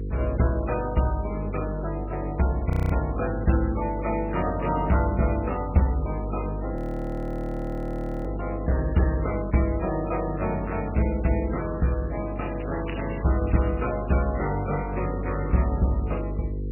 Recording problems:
lossy codec; MP3, then MP2, log-spectral distance 4 dB
mains hum; 50 Hz, harmonics up to 500 Hz, SNR 6 dB
audio freezing; at 2.5 s and at 7 s for 1.5 s
crackling; from 13 to 14 s; loose cable, SNR 17 dB

